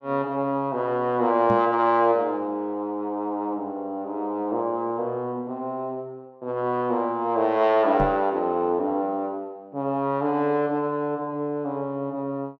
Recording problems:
microphone bump; at 1.5 s and at 8 s; peak -1 dB vs average level

